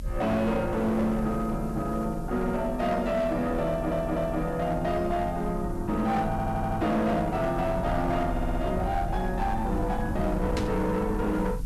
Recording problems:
distorted audio; hard clipping, signal-to-distortion ratio 11 dB
background hiss; slope 0 dB per octave, SNR 27 dB
rumble; below 110 Hz, SNR 9 dB
stutter; at 3.5 s, at 6.5 s and at 8.5 s
burst of static; at 11 s; peak -4 dB vs average level

